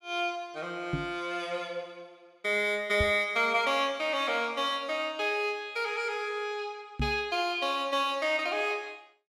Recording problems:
microphone thump; at 1 s, at 3 s and at 7 s; peak +1 dB vs average level

